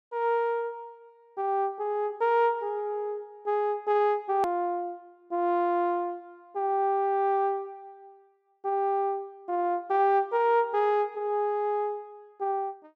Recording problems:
edit click; at 4.5 s

